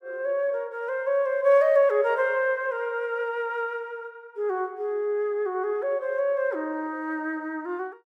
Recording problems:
none

